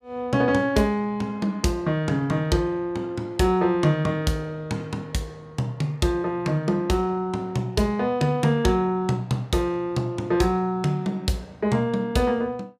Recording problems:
none

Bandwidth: 15 kHz